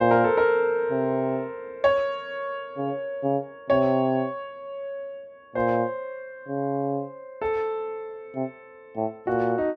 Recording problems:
none

